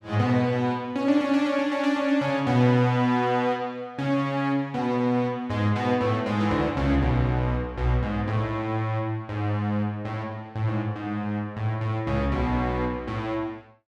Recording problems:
none

